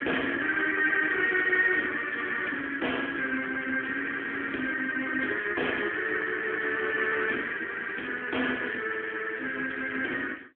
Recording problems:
telephone audio; 220 Hz to 3.3 kHz, AMR-NB

